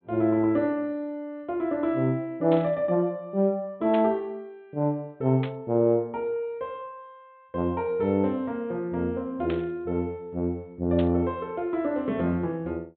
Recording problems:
treble missing; nothing above 4 kHz
burst of static; 5 times, first at 2.5 s; peak -7 dB vs average level

